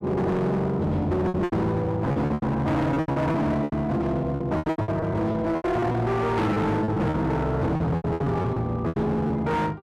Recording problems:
distorted audio; hard clipping, signal-to-distortion ratio 8 dB
packet loss; 15% of the sound replaced, filled with repeated pitch periods

